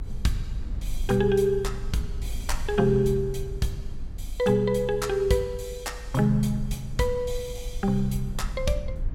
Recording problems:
low-frequency rumble; below 56 Hz, SNR 10 dB

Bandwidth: 16.5 kHz